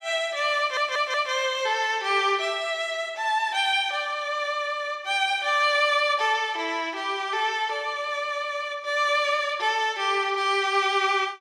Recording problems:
stutter; at 0.5 s

